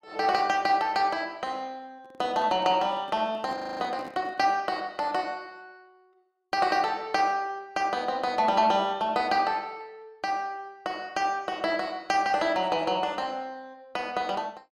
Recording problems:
microphone handling noise; from 2 to 4.5 s; peak -10 dB vs average level
audio freezing; at 3.5 s

